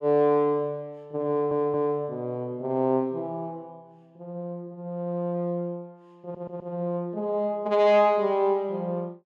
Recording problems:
stutter; at 1.5 s and at 6 s

